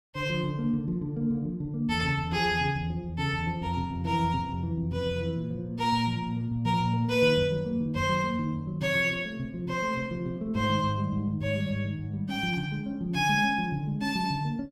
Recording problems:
none

